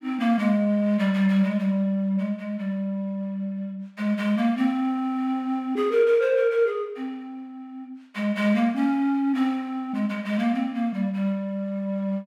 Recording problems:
none

